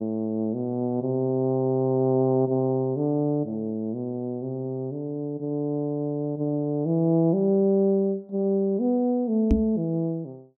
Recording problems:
microphone bump; at 9.5 s; peak +6 dB vs average level

